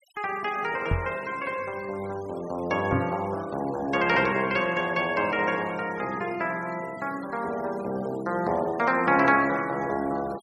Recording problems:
denoising artefacts; signal-to-artefact ratio 20 dB
microphone thump; at 1 s and at 3 s; peak +3 dB vs average level

